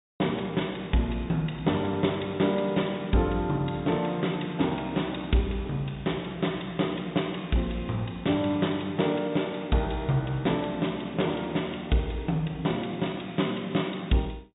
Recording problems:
low-pass filter; nothing above 4 kHz

